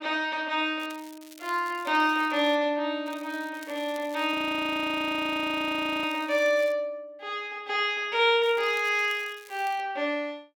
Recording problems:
crackle; from 1 to 2.5 s, from 3 to 6.5 s and from 8.5 to 10 s; loose cable, SNR 23 dB
frozen audio; at 4.5 s for 1.5 s

